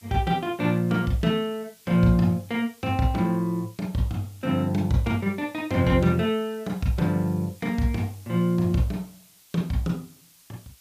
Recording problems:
background hiss; slope +2 dB per octave, SNR 27 dB

